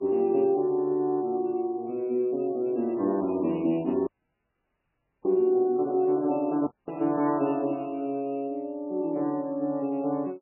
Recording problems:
lossy codec; MP3, log-spectral distance 2 dB, nothing above 2.4 kHz
dropout; at 4 s for 1 s and at 6.5 s

